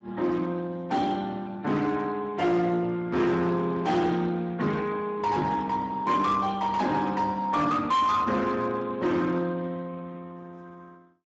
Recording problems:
codec artefacts; Speex, log-spectral distance 3 dB, nothing above 7.6 kHz
distorted audio; hard clipping, signal-to-distortion ratio 11 dB

